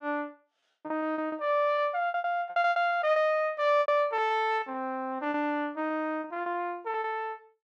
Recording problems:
lost packets; 14% of the sound replaced, filled with repeated pitch periods

